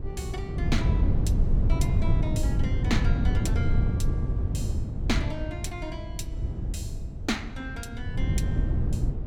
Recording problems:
wind noise; below 120 Hz, SNR -8 dB

